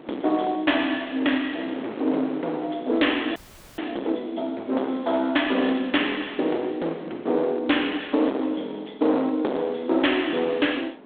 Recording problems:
phone line; 240 Hz to 3.5 kHz, G.726
distortion; hard clipping, uneven, signal-to-distortion ratio 7 dB
wind noise; below 710 Hz, SNR 17 dB
frozen audio; at 3.5 s

